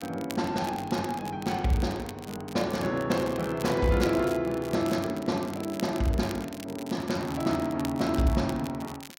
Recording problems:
crackle; vinyl, SNR 16 dB

